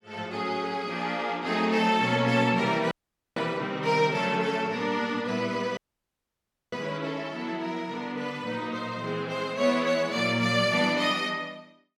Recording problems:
dropout; at 3 s and at 6 s for 1 s

